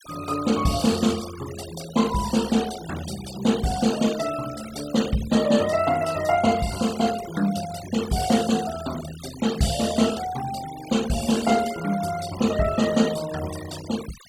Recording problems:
noise reduction artefacts; signal-to-artefact ratio 13 dB

